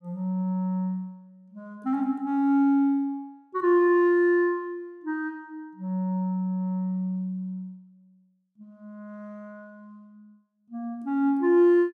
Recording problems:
none

